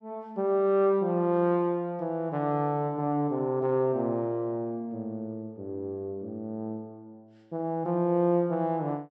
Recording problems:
none

